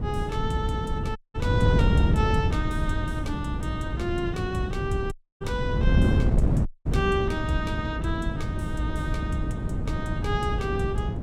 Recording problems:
wind on the microphone; below 180 Hz, SNR -3 dB
audio cutting out; at 1 s, at 5 s and at 6.5 s

